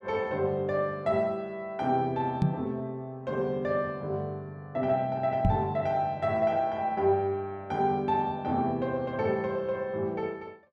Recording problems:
microphone bump; at 2.5 s and at 5.5 s; peak +8 dB vs average level

